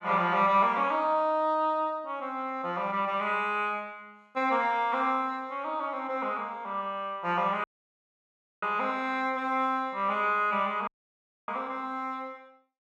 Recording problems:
dropout; at 7.5 s for 1 s and at 11 s for 0.5 s

